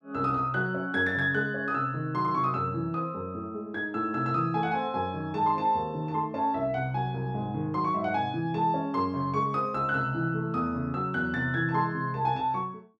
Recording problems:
none

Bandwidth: 10.5 kHz